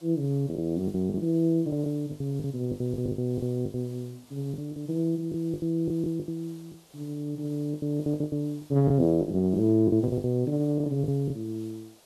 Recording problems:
background hiss; SNR 27 dB
packet loss; 14% of the sound replaced, filled with the last packet

